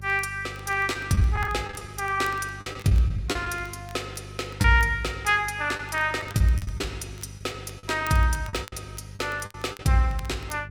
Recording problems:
hum; 50 Hz, harmonics up to 400 Hz, SNR 16 dB
crackling; vinyl, SNR 25 dB
lost packets; 8% of the sound replaced, filled with the last packet

